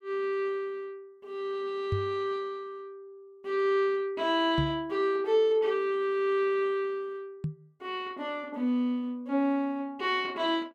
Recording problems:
knock on the microphone; at 2 s, at 4.5 s and at 7.5 s; peak +2 dB vs average level

